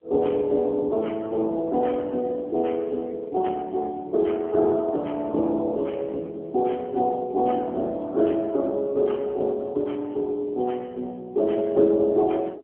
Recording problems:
phone line; 280 Hz to 3.2 kHz, AMR-NB

